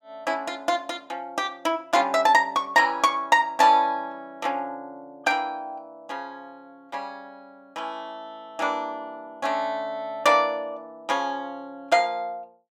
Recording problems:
none

